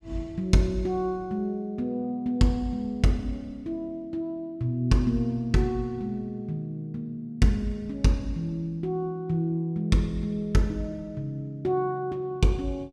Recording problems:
none

